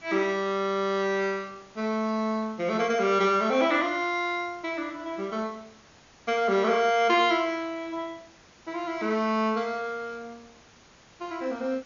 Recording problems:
low-pass filter; nothing above 7 kHz
background hiss; slope -3 dB per octave, SNR 27 dB

